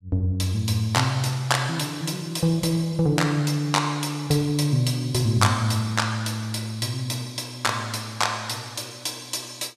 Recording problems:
none

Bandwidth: 14.5 kHz